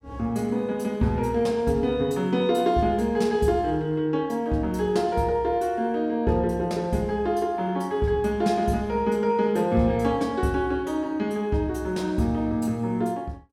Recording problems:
none

